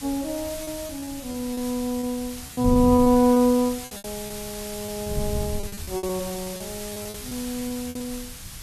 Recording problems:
background hiss; slope +2 dB per octave, SNR 11 dB
wind noise; below 140 Hz, SNR 13 dB
lost packets; 14% of the sound replaced, filled with repeated pitch periods

